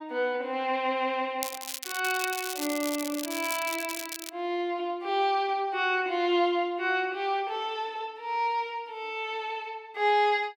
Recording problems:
crackling; from 1.5 to 4.5 s; loose cable, SNR 7 dB

